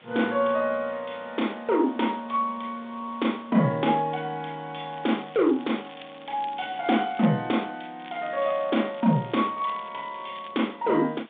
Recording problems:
phone line; 150 Hz to 3.7 kHz, G.726
background hiss; SNR 27 dB
crackling; from 5 to 7.5 s and from 8 to 11 s; loose cable, SNR 23 dB

